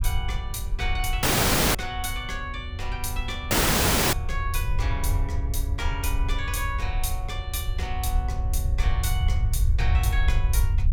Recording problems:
low-frequency rumble; below 78 Hz, SNR -4 dB
dropout; at 1 s for 0.5 s and at 3.5 s for 0.5 s

